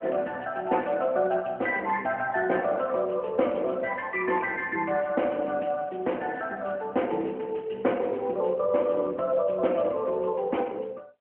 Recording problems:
phone line; 280 Hz to 3.2 kHz, AMR-NB

